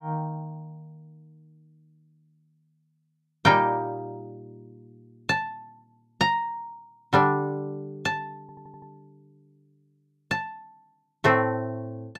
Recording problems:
audio stuttering; at 8.5 s

